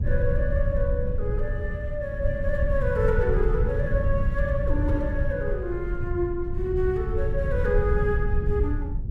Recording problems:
rumble; below 92 Hz, SNR -1 dB

